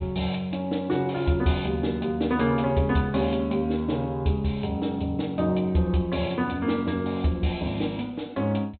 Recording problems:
low-pass filter; nothing above 4 kHz

